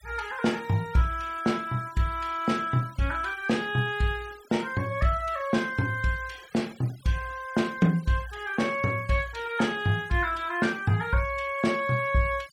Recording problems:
denoising artefacts; signal-to-artefact ratio 22 dB

